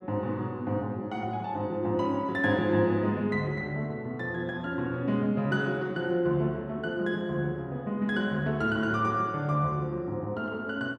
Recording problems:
none

